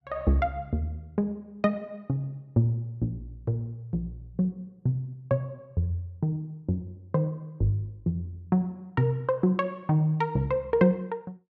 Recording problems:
none

